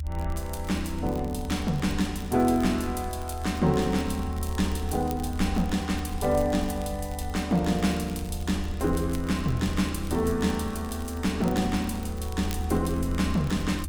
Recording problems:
rumble; below 78 Hz, strongest tone 76 Hz, SNR 7 dB
crackle; vinyl, SNR 21 dB

